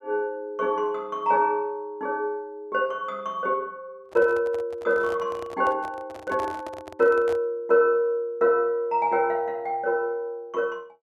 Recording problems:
handling noise; from 4 to 7.5 s; peak -8 dB vs average level

